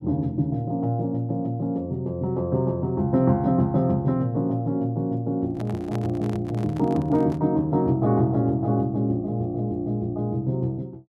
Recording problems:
microphone handling noise; from 5.5 to 7.5 s; peak -8 dB vs average level

